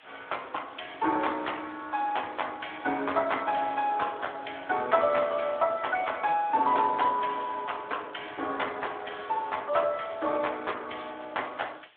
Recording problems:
telephone audio; 240 Hz to 3.6 kHz, Speex
background hiss; SNR 27 dB

